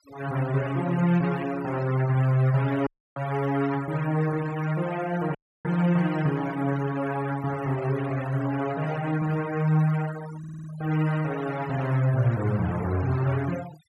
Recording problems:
denoising artefacts; signal-to-artefact ratio 16 dB
dropout; at 3 s and at 5.5 s
stutter; at 10 s

